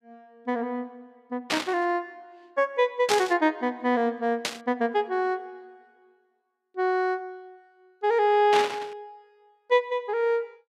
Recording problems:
static burst; 4 times, first at 1.5 s; peak +3 dB vs average level

